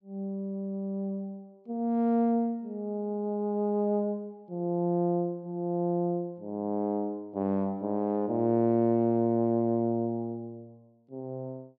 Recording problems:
none

